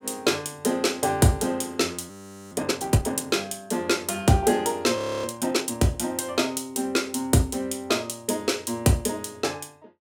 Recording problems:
frozen audio; at 2 s and at 5 s

